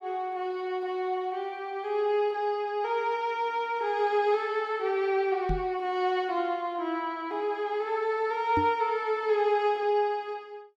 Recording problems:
knock on the microphone; at 5.5 s and at 8.5 s; peak +1 dB vs average level

